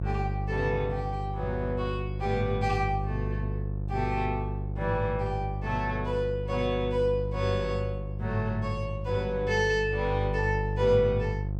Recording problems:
hum; 50 Hz, harmonics up to 550 Hz, SNR 4 dB

